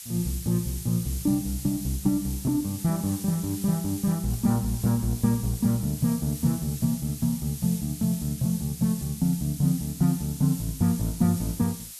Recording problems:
background hiss; slope +5 dB per octave, SNR 12 dB

